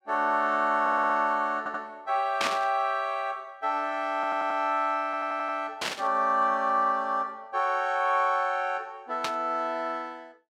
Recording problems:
audio stuttering; 4 times, first at 1 s
static burst; at 2.5 s, at 6 s and at 9 s; peak +2 dB vs average level

